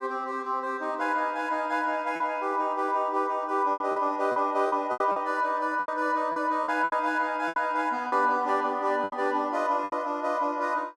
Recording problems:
packet loss; 8% of the sound replaced, filled with repeated pitch periods

